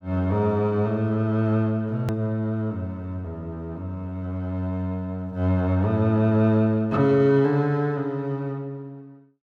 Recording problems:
click at an edit; at 2 s

